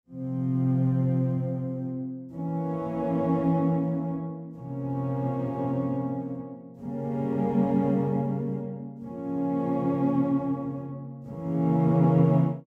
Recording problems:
none

